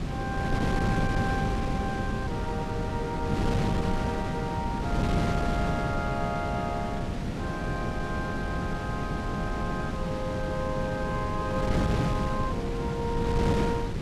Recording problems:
wind noise; below 300 Hz, SNR -3 dB

